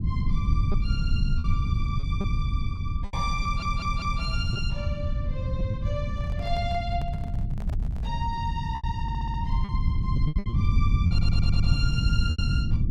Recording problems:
rumble; below 120 Hz, SNR -7 dB
lost packets; 7% of the sound replaced, filled with repeated pitch periods
stutter; at 3.5 s, at 9 s and at 11 s
handling noise; from 6 to 8 s; peak -5 dB vs average level

